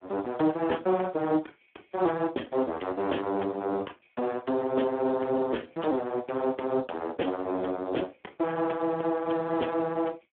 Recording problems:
telephone audio; 220 Hz to 3.4 kHz, Speex

